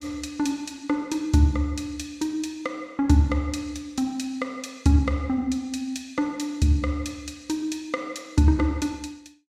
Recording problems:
none

